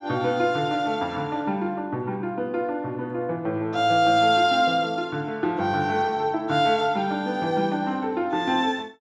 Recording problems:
none

